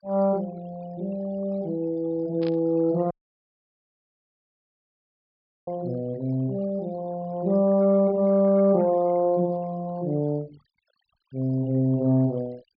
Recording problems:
treble cut off; nothing above 5.5 kHz
denoising artefacts; signal-to-artefact ratio 26 dB
static burst; at 2.5 s; peak -13 dB vs average level
dropout; at 3 s for 2.5 s

